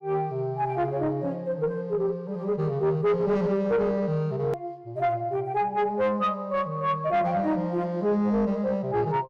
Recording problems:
distorted audio; soft clipping, signal-to-distortion ratio 10 dB
click at an edit; at 4.5 s

